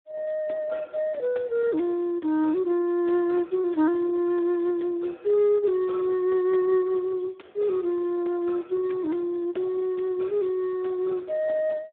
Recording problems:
telephone audio; 240 Hz to 3.7 kHz, Speex

